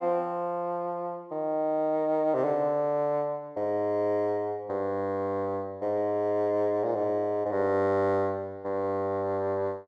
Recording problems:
none

